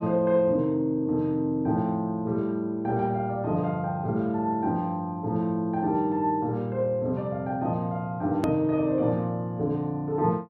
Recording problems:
hard cut with a click; at 8.5 s

